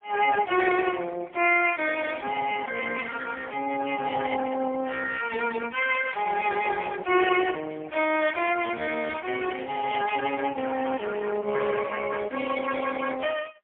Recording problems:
telephone audio; 240 Hz to 3.3 kHz, AMR-NB, then MP3

